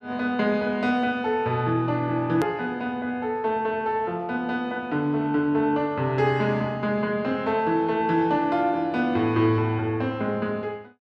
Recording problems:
edit click; at 2.5 s

